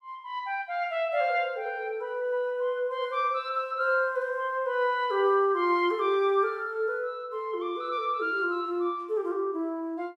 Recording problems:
none

